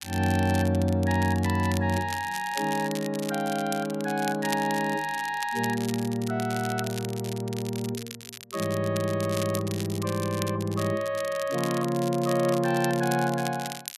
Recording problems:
crackle; vinyl, SNR 12 dB

